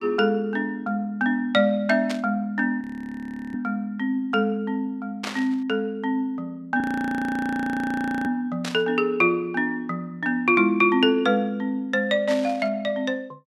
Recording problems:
static burst; 4 times, first at 2 s; peak -3 dB vs average level
audio freezing; at 3 s for 0.5 s and at 7 s for 1.5 s

